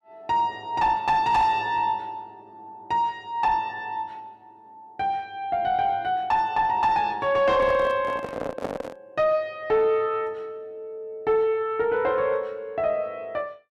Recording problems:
distorted audio; soft clipping, signal-to-distortion ratio 10 dB
microphone handling noise; from 7.5 to 9 s; peak -2 dB vs average level

